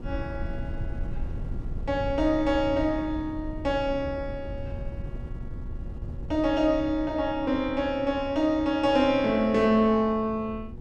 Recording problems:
electrical hum; 60 Hz, harmonics up to 960 Hz, SNR 23 dB
wind noise; below 100 Hz, SNR 13 dB

